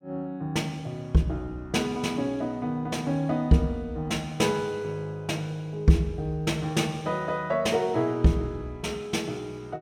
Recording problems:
none

